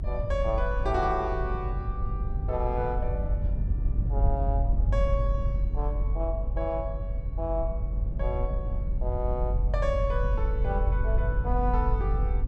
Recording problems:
rumble; below 74 Hz, strongest tone 46 Hz, SNR -3 dB

